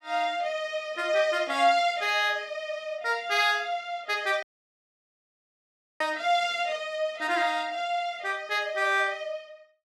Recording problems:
audio cutting out; at 4.5 s for 1.5 s

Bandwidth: 14.5 kHz